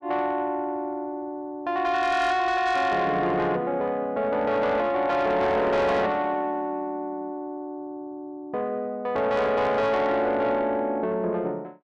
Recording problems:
distortion; soft clipping, signal-to-distortion ratio 12 dB

